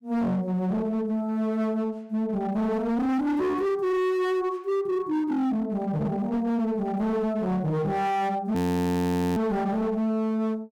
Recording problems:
distortion; hard clipping, signal-to-distortion ratio 8 dB
frozen audio; at 8.5 s for 1 s

